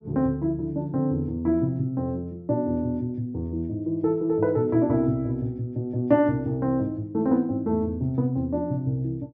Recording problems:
treble missing; nothing above 8 kHz

